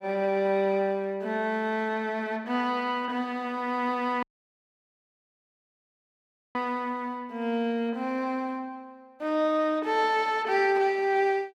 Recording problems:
audio cutting out; at 4 s for 2.5 s

